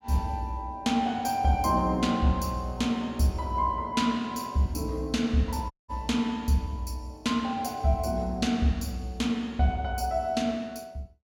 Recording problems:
audio cutting out; at 5.5 s

